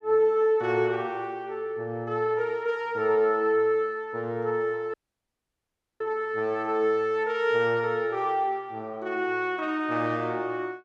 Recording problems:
dropout; at 5 s for 1 s

